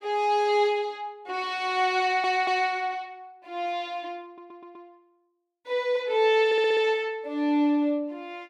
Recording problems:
audio stuttering; at 2 s, at 4.5 s and at 6.5 s

